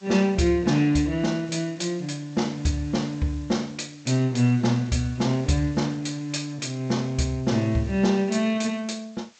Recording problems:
lossy codec; G.722, log-spectral distance 5 dB, nothing above 8 kHz
background hiss; slope +1 dB per octave, SNR 27 dB

